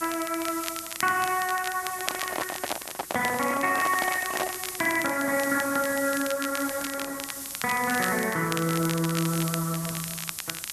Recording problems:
lossy compression; Opus, log-spectral distance 3 dB
hiss; SNR 8 dB
crackling; vinyl, SNR 10 dB
handling noise; from 2 to 4.5 s; peak 0 dB vs average level

